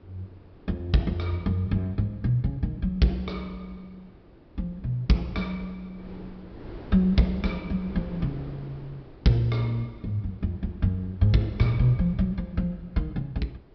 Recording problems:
low-pass filter; nothing above 5.5 kHz
wind on the microphone; below 410 Hz, SNR 20 dB

